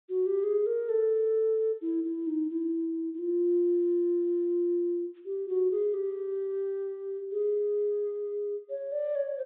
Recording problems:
treble cut off; nothing above 4 kHz

